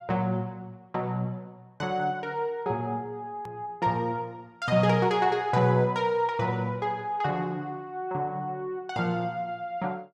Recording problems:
hard cut with a click; at 3.5 s

